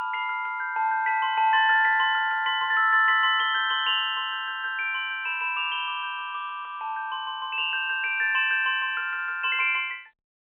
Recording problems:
telephone audio; 220 Hz to 3.2 kHz, G.711

